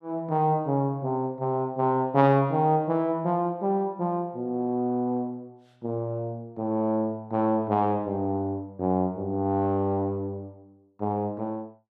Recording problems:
none

